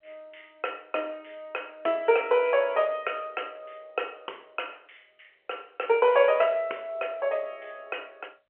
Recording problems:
phone line; 340 Hz to 3.3 kHz, G.711

